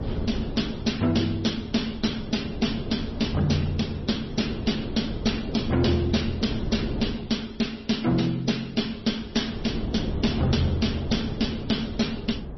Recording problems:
lossy compression; Opus, then MP3, log-spectral distance 4 dB, nothing above 5.8 kHz
distortion; hard clipping, uneven, signal-to-distortion ratio 10 dB
wind on the microphone; below 320 Hz, SNR 7 dB

